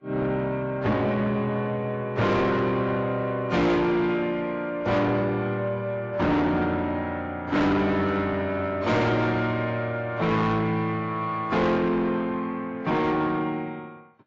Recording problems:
lossy codec; AAC, log-spectral distance 2 dB, nothing above 7.3 kHz
distorted audio; soft clipping, signal-to-distortion ratio 7 dB

